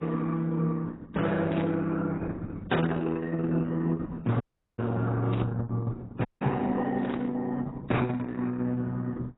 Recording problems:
lossy codec; Opus, then AAC, log-spectral distance 3 dB, nothing above 3.8 kHz
static burst; at 1.5 s, at 5.5 s and at 7 s; peak -8 dB vs average level
dropout; at 4.5 s and at 6.5 s

